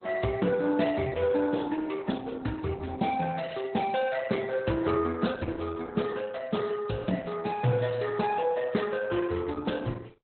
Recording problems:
lossy compression; Speex, then Opus, log-spectral distance 7 dB, nothing above 4 kHz

